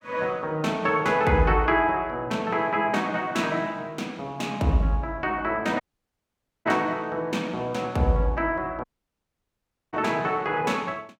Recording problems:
dropout; at 6 s for 1 s and at 9 s for 1 s

